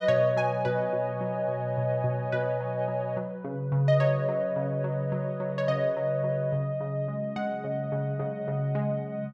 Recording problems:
none

